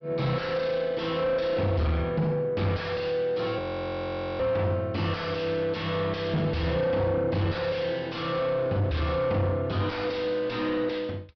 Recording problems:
treble cut off; nothing above 5.5 kHz
distortion; soft clipping, signal-to-distortion ratio 7 dB
frozen audio; at 3.5 s for 1 s

